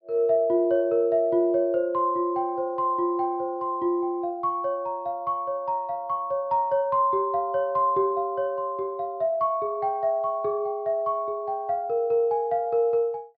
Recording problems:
treble cut off; nothing above 5.1 kHz

